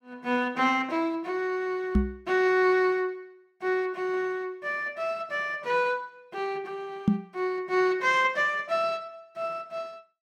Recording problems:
microphone bump; at 2 s and at 7 s; peak +9 dB vs average level

